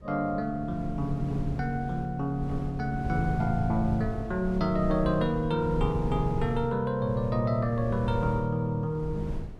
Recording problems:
wind noise; below 140 Hz, SNR 9 dB

